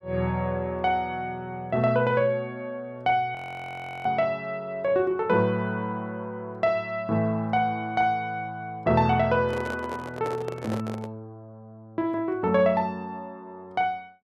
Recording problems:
frozen audio; at 3.5 s for 0.5 s
handling noise; from 9.5 to 11 s; peak -3 dB vs average level

